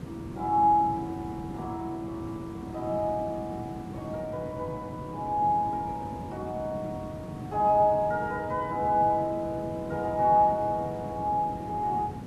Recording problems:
hiss; slope -8 dB per octave, SNR 11 dB

